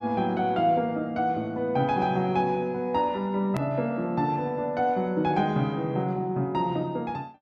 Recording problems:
hard cut with a click; at 3.5 s

